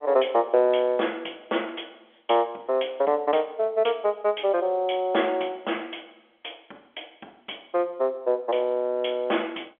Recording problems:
phone line; 280 Hz to 3.4 kHz, G.711

